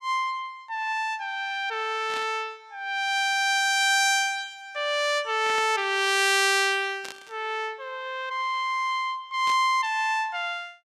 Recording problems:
static burst; 4 times, first at 2 s; peak -9 dB vs average level

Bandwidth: 14.5 kHz